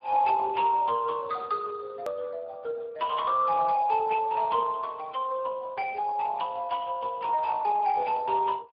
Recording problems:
treble cut off; nothing above 4.9 kHz
lossy codec; Speex, log-spectral distance 3 dB
hard cut with a click; at 2 s

